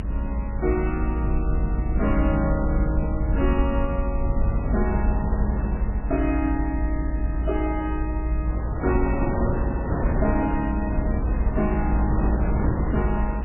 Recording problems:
lossy compression; MP3, log-spectral distance 2 dB, nothing above 2.6 kHz
rumble; below 60 Hz, strongest tone 56 Hz, SNR -1 dB
wind on the microphone; below 290 Hz, SNR 3 dB

